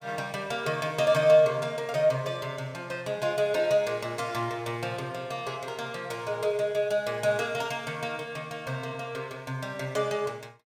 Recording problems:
none

